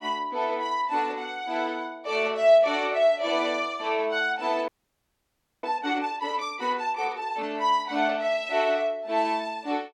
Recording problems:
audio freezing; at 4.5 s for 1 s

